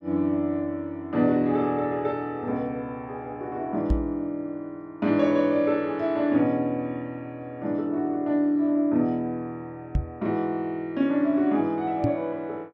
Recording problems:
knock on the microphone; at 4 s, at 10 s and at 12 s; peak +5 dB vs average level

